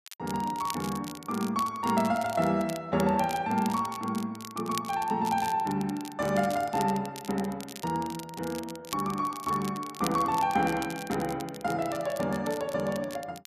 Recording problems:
crackle; vinyl, SNR 14 dB

